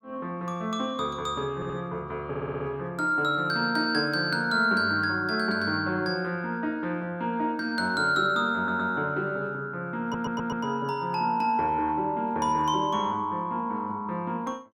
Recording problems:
stutter; 4 times, first at 1.5 s

